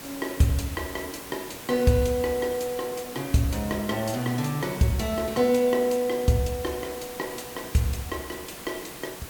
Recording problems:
hiss; slope -3 dB per octave, SNR 12 dB

